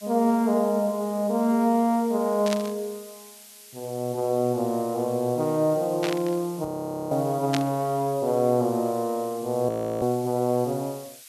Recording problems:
hiss; slope +5 dB per octave, SNR 20 dB
burst of static; at 2.5 s, at 6 s and at 7.5 s; peak 0 dB vs average level
audio freezing; at 6.5 s and at 9.5 s

